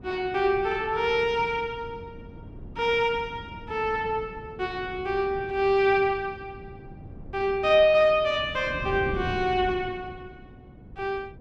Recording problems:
wind noise; below 270 Hz, SNR 16 dB

